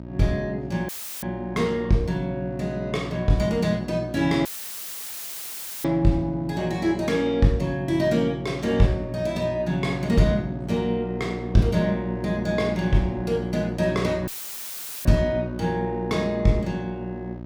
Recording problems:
hum; 60 Hz, harmonics up to 960 Hz, SNR 10 dB
audio cutting out; at 1 s, at 4.5 s for 1.5 s and at 14 s for 1 s; filled with static

